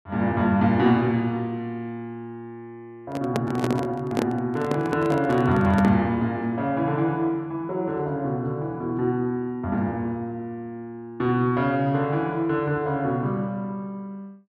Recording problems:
handling noise; from 3 to 6 s; peak +3 dB vs average level

